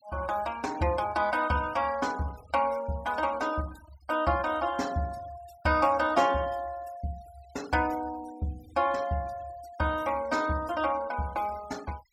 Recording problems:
noise reduction artefacts; signal-to-artefact ratio 21 dB

